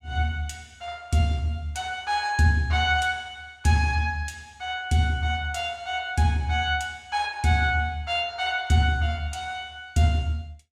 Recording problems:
none

